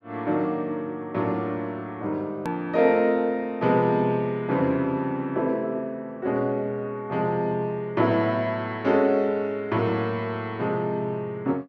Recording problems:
click at an edit; at 2.5 s

